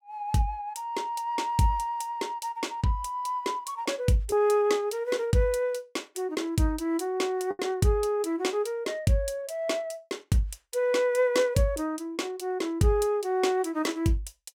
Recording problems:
lost packets; 0.7% of the sound replaced, filled with the last packet

